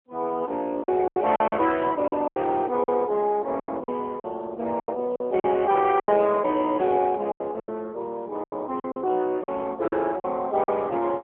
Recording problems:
phone line; 240 Hz to 3.5 kHz, AMR-NB
lost packets; 11% of the sound replaced, filled with silence

